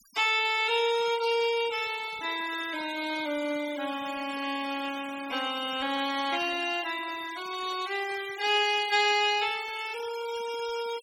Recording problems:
noise reduction artefacts; signal-to-artefact ratio 15 dB

